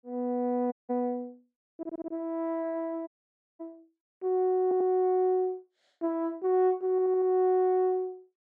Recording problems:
audio cutting out; at 0.5 s and at 3 s for 0.5 s
stutter; at 2 s, at 4.5 s and at 7 s

